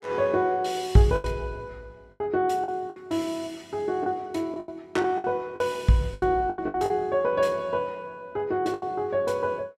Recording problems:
lost packets; 8% of the sound replaced, filled with the last packet

